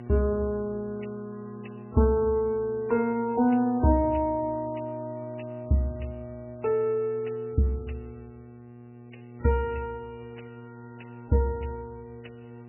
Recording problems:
lossy codec; MP3, log-spectral distance 4 dB, nothing above 2.9 kHz
hum; 60 Hz, harmonics up to 1.6 kHz, SNR 16 dB

